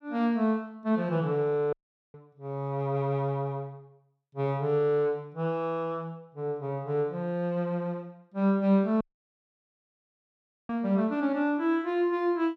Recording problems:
dropout; at 1.5 s and at 9 s for 1.5 s

